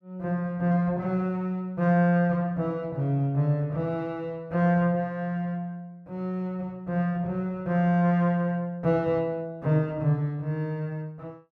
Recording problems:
none

